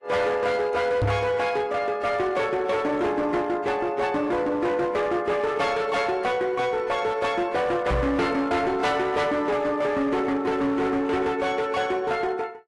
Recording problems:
lossy compression; AAC, log-spectral distance 2 dB, nothing above 11.3 kHz
distortion; hard clipping, uneven, signal-to-distortion ratio 11 dB
microphone thump; at 1 s and at 8 s; peak +3 dB vs average level

